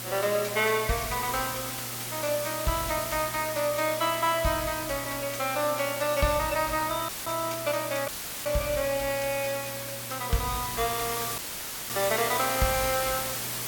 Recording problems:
hum; 60 Hz, harmonics up to 600 Hz, SNR 17 dB
background hiss; slope -1 dB per octave, SNR 4 dB
dropout; at 7 s, at 8 s and at 11 s for 0.5 s

